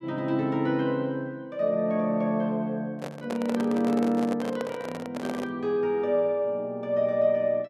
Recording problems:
handling noise; from 3 to 5.5 s; peak -2 dB vs average level

